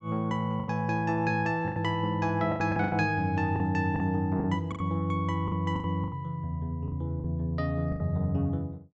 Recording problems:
lost packets; 10% of the sound replaced, filled with the last packet

